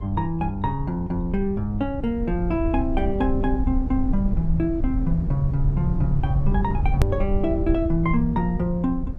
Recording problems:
low-frequency rumble; below 82 Hz, SNR 3 dB
edit click; at 7 s

